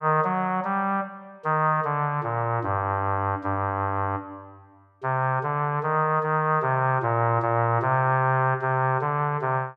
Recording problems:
none

